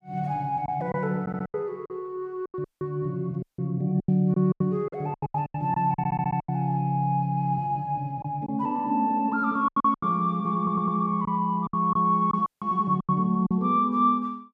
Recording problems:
packet loss; 10% of the sound replaced, filled with silence
audio stuttering; at 1 s, at 6 s and at 11 s
dropout; at 2.5 s, at 3.5 s and at 12 s

